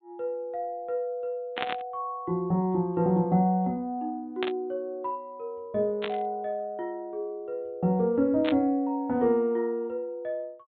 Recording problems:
treble missing; nothing above 4 kHz
burst of static; 4 times, first at 1.5 s; peak +2 dB vs average level

